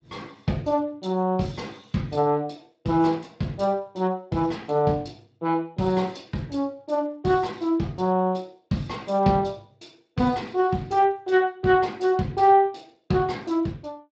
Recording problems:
lossy codec; Speex, log-spectral distance 3 dB

